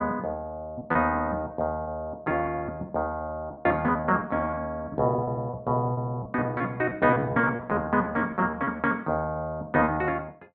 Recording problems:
packet loss; 14% of the sound replaced, filled with repeated pitch periods

